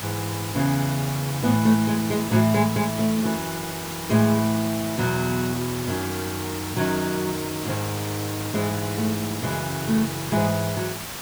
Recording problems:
background hiss; slope -2 dB per octave, SNR 7 dB

